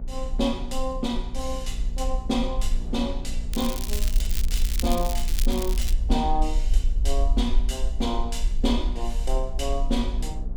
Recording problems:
hum; 60 Hz, harmonics up to 900 Hz, SNR 13 dB
rumble; below 46 Hz, SNR 0 dB
wind noise; below 400 Hz, SNR 19 dB
crackling; from 3.5 to 6 s; loose cable, SNR 5 dB

